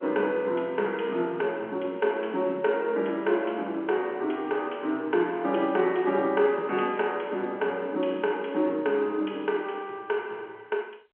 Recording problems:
telephone audio; 220 Hz to 3.3 kHz, G.711

